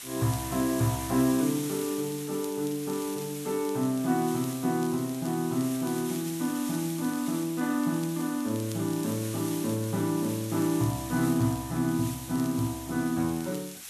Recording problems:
hiss; slope +2 dB per octave, SNR 11 dB
crackle; vinyl, SNR 24 dB

